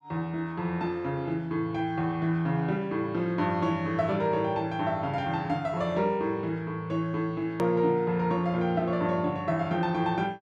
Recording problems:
edit click; at 7.5 s

